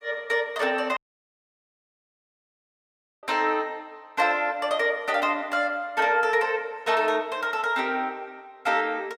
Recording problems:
dropout; at 1 s for 2.5 s

